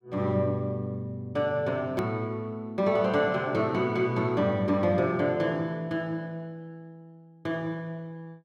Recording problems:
edit click; at 2 s

